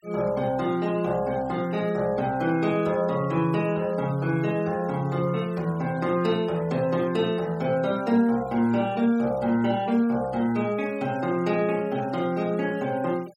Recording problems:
denoising artefacts; signal-to-artefact ratio 24 dB

